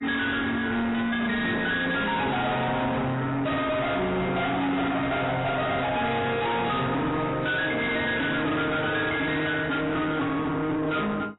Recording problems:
lossy codec; AAC, log-spectral distance 5 dB, nothing above 3.8 kHz
distortion; soft clipping, signal-to-distortion ratio 6 dB

